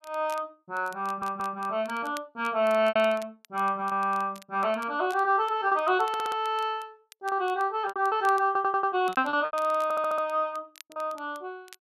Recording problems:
crackling; vinyl, SNR 24 dB
packet loss; 6% of the sound replaced, filled with repeated pitch periods
audio stuttering; 4 times, first at 1 s

